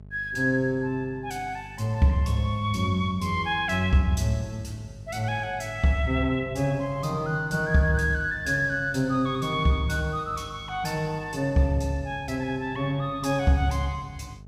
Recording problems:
electrical hum; 50 Hz, harmonics up to 650 Hz, SNR 19 dB

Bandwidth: 15.5 kHz